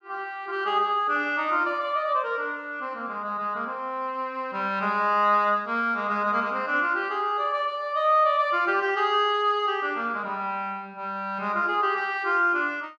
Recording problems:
none

